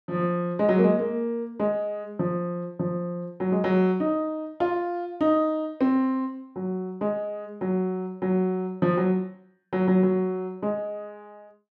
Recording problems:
none

